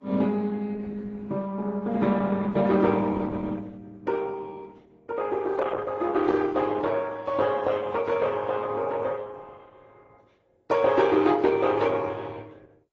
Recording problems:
lossy codec; Opus, then AAC, log-spectral distance 4 dB, nothing above 7.6 kHz

